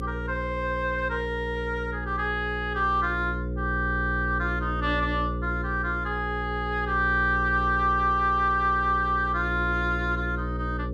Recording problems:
hum; 60 Hz, harmonics up to 540 Hz, SNR 6 dB

